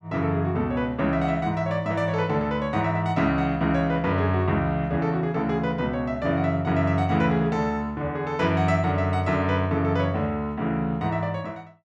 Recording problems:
none

